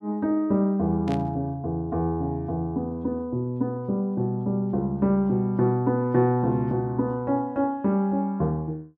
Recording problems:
burst of static; at 1 s; peak -11 dB vs average level

